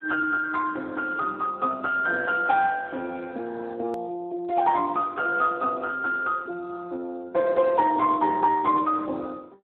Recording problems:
telephone audio; 260 Hz to 2.1 kHz, Speex
edit click; at 4 s

